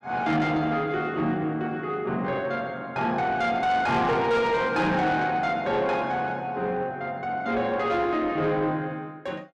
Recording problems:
distortion; soft clipping, signal-to-distortion ratio 11 dB

